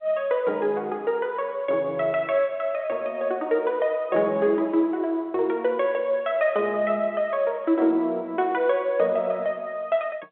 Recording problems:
telephone audio; 280 Hz to 3.7 kHz, G.711

